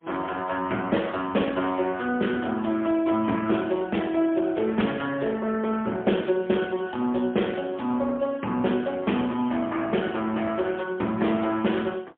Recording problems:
telephone audio; 150 Hz to 3.4 kHz, AMR-NB, then MP3

